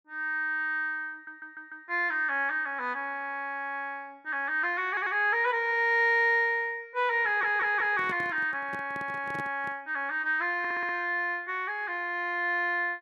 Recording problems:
audio stuttering; 4 times, first at 1 s
microphone handling noise; from 7 to 10 s; peak -8 dB vs average level

